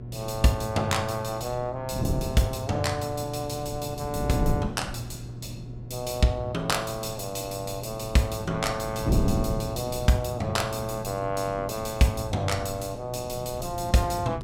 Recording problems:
hum; 60 Hz, harmonics up to 720 Hz, SNR 12 dB
wind on the microphone; below 240 Hz, SNR 7 dB

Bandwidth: 17 kHz